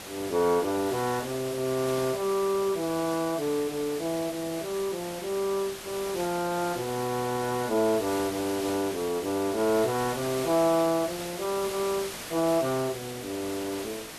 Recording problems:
hiss; slope -2 dB per octave, SNR 10 dB

